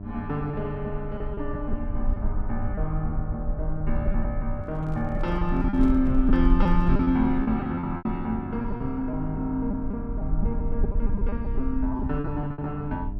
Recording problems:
hum; 50 Hz, harmonics up to 1 kHz, SNR 13 dB
low-frequency rumble; below 48 Hz, strongest tone 22 Hz, SNR 4 dB
lost packets; 9% of the sound replaced, filled with repeated pitch periods
handling noise; from 4.5 to 7 s; peak -8 dB vs average level

